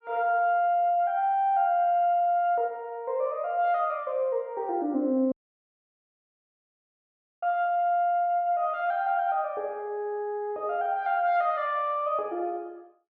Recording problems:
audio cutting out; at 5.5 s for 2 s

